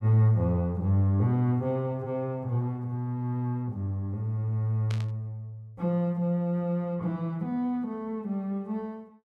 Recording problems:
static burst; at 5 s; peak -9 dB vs average level

